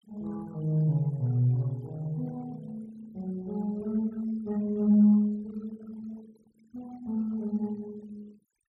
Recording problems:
denoising artefacts; signal-to-artefact ratio 28 dB

